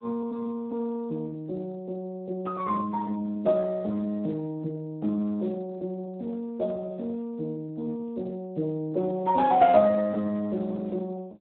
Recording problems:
phone line; 150 Hz to 2.8 kHz, Speex

